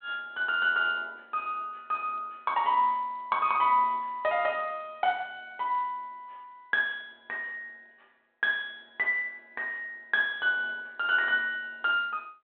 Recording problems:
telephone audio; 280 Hz to 3.7 kHz, G.726

